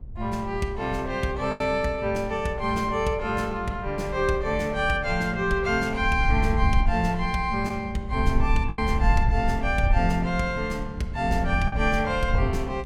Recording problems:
wind on the microphone; below 72 Hz, SNR 5 dB
packet loss; 1.7% of the sound replaced, filled with the last packet

